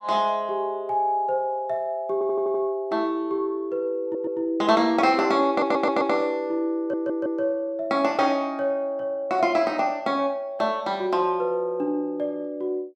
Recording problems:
stutter; 4 times, first at 2 s

